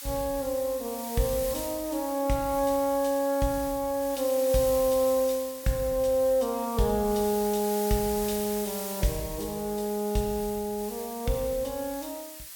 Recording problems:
hiss; slope +4 dB per octave, SNR 10 dB

